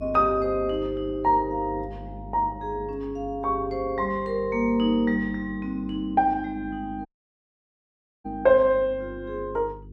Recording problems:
hum; 50 Hz, harmonics up to 450 Hz, SNR 17 dB
audio cutting out; at 7 s for 1 s

